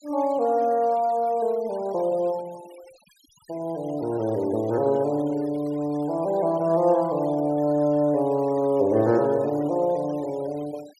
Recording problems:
denoising artefacts; signal-to-artefact ratio 25 dB

